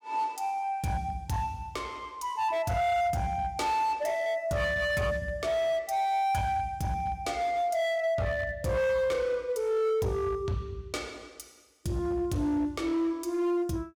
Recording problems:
distortion; hard clipping, signal-to-distortion ratio 11 dB

